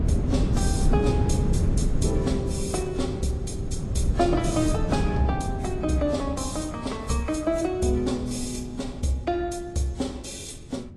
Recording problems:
codec artefacts; AAC, then Vorbis, log-spectral distance 3 dB, nothing above 11 kHz
wind on the microphone; below 180 Hz, SNR 1 dB

